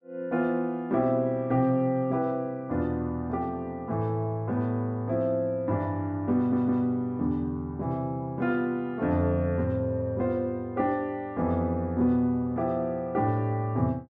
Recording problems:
audio stuttering; at 6.5 s

